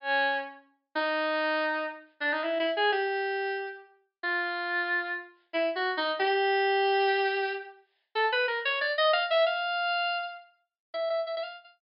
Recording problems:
treble missing; nothing above 5.5 kHz

